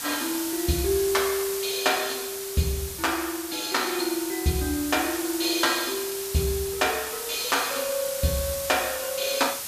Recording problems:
hiss; slope +1 dB per octave, SNR 5 dB

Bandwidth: 14.5 kHz